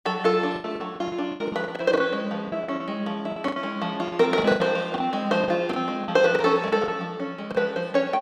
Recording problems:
packet loss; 14% of the sound replaced, filled with the last packet

